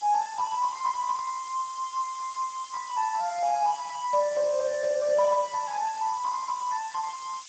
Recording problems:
lossy codec; Speex, log-spectral distance 13 dB
hiss; slope +7 dB per octave, SNR 16 dB

